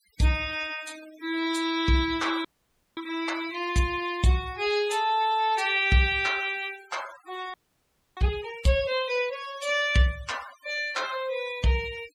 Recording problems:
noise reduction artefacts; signal-to-artefact ratio 17 dB
audio freezing; at 2.5 s for 0.5 s and at 7.5 s for 0.5 s

